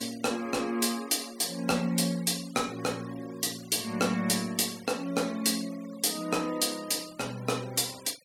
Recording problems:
noise reduction artefacts; signal-to-artefact ratio 19 dB

